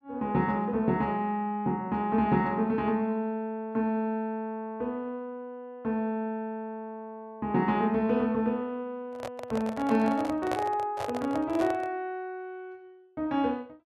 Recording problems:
microphone handling noise; from 9 to 12 s; peak +1 dB vs average level

